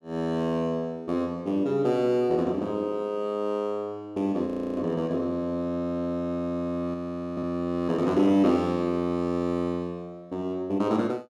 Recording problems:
audio freezing; at 4.5 s and at 7 s

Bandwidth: 13 kHz